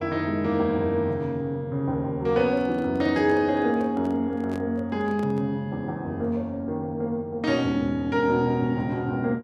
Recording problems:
microphone handling noise; from 2.5 to 5.5 s; peak -10 dB vs average level

